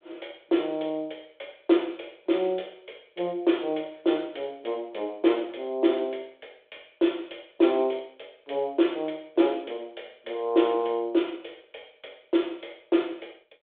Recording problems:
phone line; 280 Hz to 3.6 kHz, G.726

